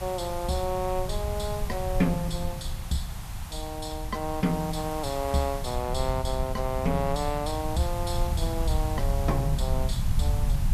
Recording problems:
background hiss; SNR 12 dB
low-frequency rumble; below 96 Hz, SNR 3 dB

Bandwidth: 14 kHz